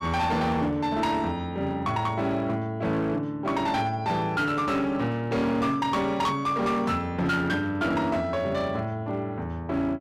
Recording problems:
distorted audio; hard clipping, uneven, signal-to-distortion ratio 11 dB

